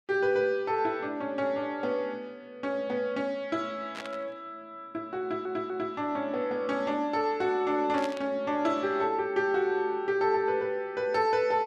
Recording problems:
burst of static; at 4 s and at 8 s; peak -6 dB vs average level
stutter; at 5 s

